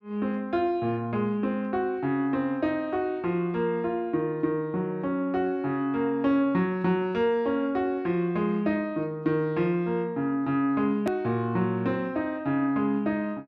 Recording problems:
edit click; at 11 s

